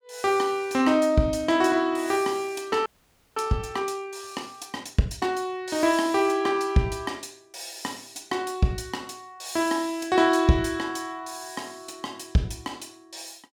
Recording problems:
audio freezing; at 3 s for 0.5 s

